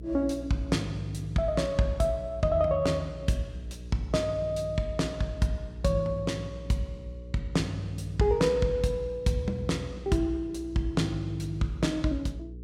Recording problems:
hum; 60 Hz, harmonics up to 480 Hz, SNR 14 dB

